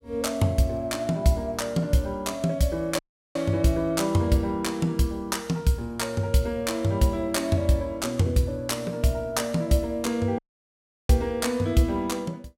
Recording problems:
dropout; at 3 s and at 10 s for 0.5 s

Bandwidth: 16.5 kHz